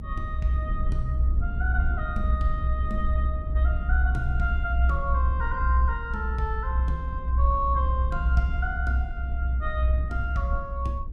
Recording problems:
rumble; below 64 Hz, strongest tone 62 Hz, SNR -5 dB

